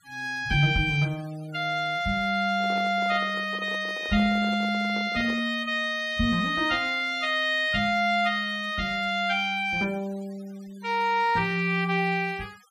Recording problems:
denoising artefacts; signal-to-artefact ratio 26 dB
microphone handling noise; from 2.5 to 5.5 s; peak -11 dB vs average level

